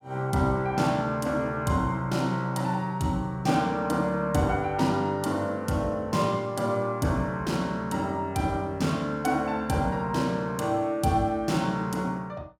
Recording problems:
none

